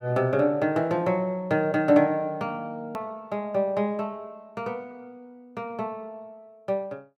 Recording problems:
edit click; at 3 s

